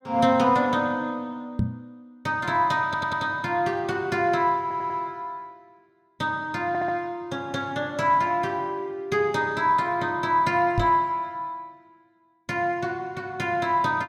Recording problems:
microphone thump; at 1.5 s and at 11 s; peak +3 dB vs average level
stutter; at 3 s, at 4.5 s and at 6.5 s

